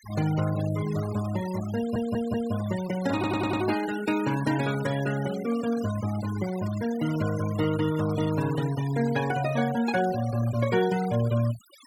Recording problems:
denoising artefacts; signal-to-artefact ratio 14 dB
audio stuttering; at 2 s and at 3 s

